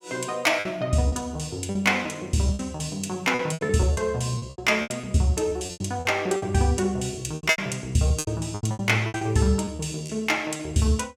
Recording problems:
packet loss; 14% of the sound replaced, filled with repeated pitch periods

